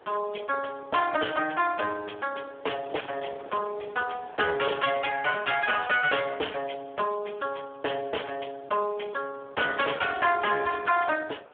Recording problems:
phone line; 320 Hz to 3.4 kHz, Speex
distortion; soft clipping, signal-to-distortion ratio 12 dB
wind on the microphone; below 1.5 kHz, SNR 21 dB

